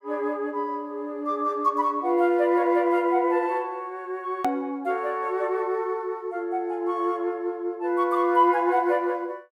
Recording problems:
edit click; at 4.5 s

